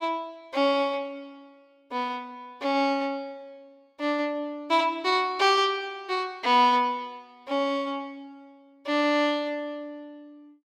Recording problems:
none

